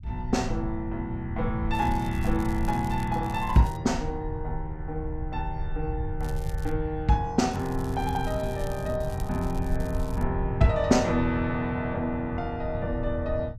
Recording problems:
low-frequency rumble; below 84 Hz, SNR 7 dB
crackling; from 1.5 to 4 s, at 6 s and from 7.5 to 10 s; loose cable, SNR 21 dB

